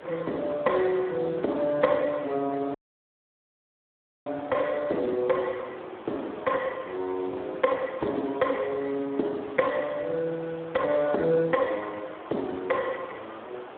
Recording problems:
telephone audio; 260 Hz to 3 kHz, Speex
hiss; SNR 16 dB
audio cutting out; at 3 s for 1.5 s

